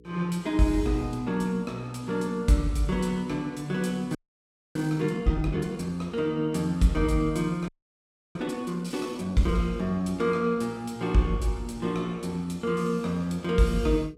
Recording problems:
hum; 60 Hz, harmonics up to 480 Hz, SNR 26 dB
frozen audio; at 4 s for 0.5 s and at 7.5 s for 0.5 s

